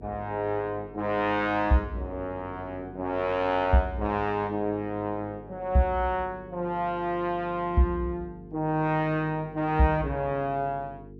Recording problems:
electrical hum; 50 Hz, harmonics up to 450 Hz, SNR 18 dB

